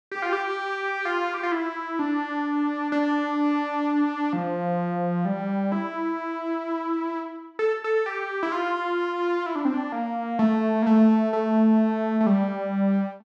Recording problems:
none

